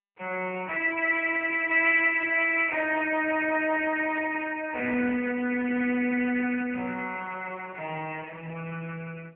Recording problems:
phone line; 280 Hz to 3.1 kHz, AMR-NB

